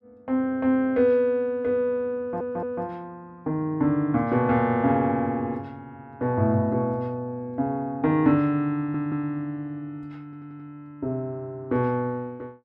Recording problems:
stutter; at 2 s, at 9 s and at 10 s

